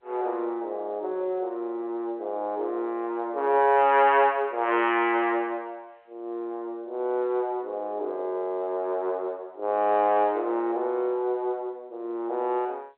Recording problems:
phone line; 300 Hz to 3.4 kHz, G.711

